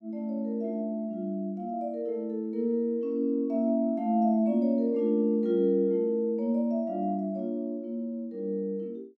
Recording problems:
none

